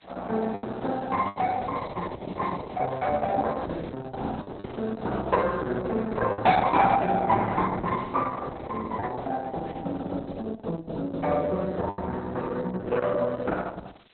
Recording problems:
lossy codec; Opus, log-spectral distance 8 dB, nothing above 4 kHz
hiss; SNR 28 dB
packet loss; 3% of the sound replaced, filled with the last packet

